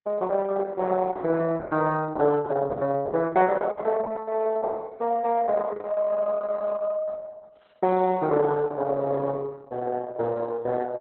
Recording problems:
codec artefacts; Opus, log-spectral distance 3 dB, nothing above 4 kHz

